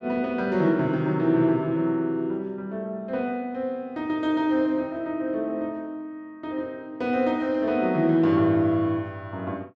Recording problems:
none

